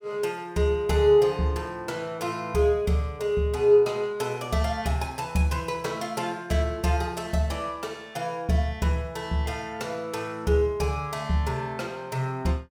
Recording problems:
none

